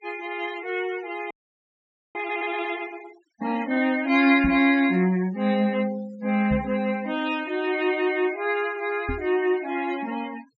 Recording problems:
low-pass filter; nothing above 8 kHz
noise reduction artefacts; signal-to-artefact ratio 20 dB
audio freezing; at 1.5 s for 1 s
microphone bump; at 4.5 s, at 6.5 s and at 9 s; peak -1 dB vs average level

